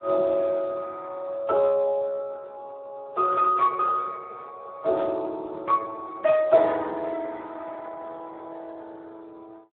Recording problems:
phone line; 340 Hz to 2.2 kHz, Speex

